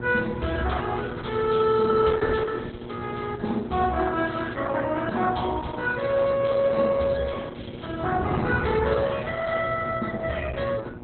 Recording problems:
codec artefacts; Opus, log-spectral distance 5 dB, nothing above 4 kHz
hum; 60 Hz, harmonics up to 1.4 kHz, SNR 14 dB
wind on the microphone; below 280 Hz, SNR 12 dB

